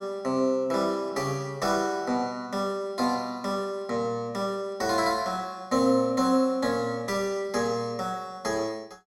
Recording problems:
none

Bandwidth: 16 kHz